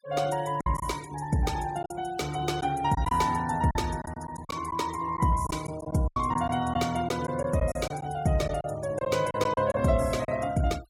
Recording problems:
denoising artefacts; signal-to-artefact ratio 20 dB
lost packets; 8% of the sound replaced, filled with silence

